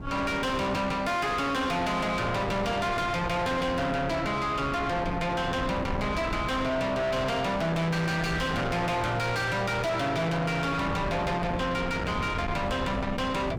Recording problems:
distorted audio; soft clipping, signal-to-distortion ratio 5 dB
wind noise; below 870 Hz, SNR 7 dB

